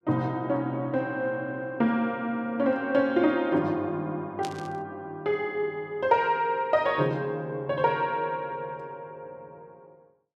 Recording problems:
burst of static; at 4.5 s; peak -7 dB vs average level

